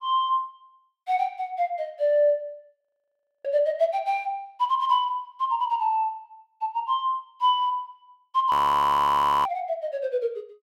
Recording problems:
audio freezing; at 3 s for 0.5 s and at 8.5 s for 1 s

